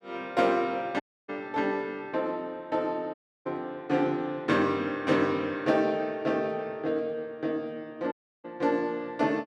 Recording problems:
dropout; at 1 s, at 3 s and at 8 s

